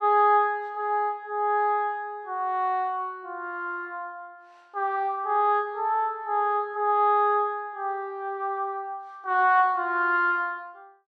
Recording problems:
none

